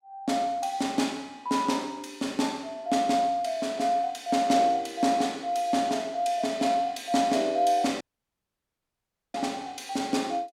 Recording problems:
audio cutting out; at 8 s for 1.5 s

